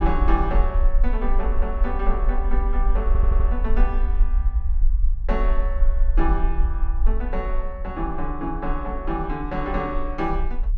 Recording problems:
low-frequency rumble; below 46 Hz, SNR -4 dB
stutter; at 3 s

